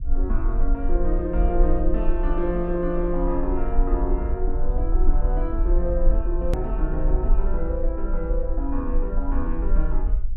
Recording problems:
rumble; below 44 Hz, strongest tone 22 Hz, SNR -2 dB
edit click; at 6.5 s

